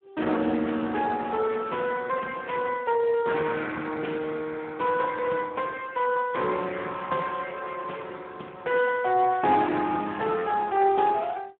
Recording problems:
telephone audio; 190 Hz to 3.4 kHz, Speex

